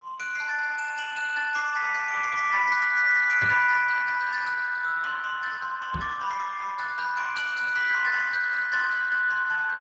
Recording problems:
lossy codec; Speex, log-spectral distance 4 dB
knock on the microphone; at 3.5 s and at 6 s; peak -5 dB vs average level

